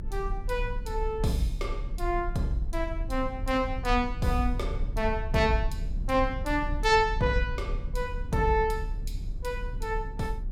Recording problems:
rumble; below 58 Hz, strongest tone 34 Hz, SNR 6 dB

